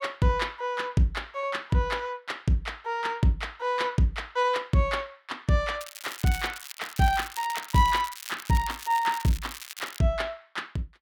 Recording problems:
crackling; from 6 to 10 s; loose cable, SNR 12 dB

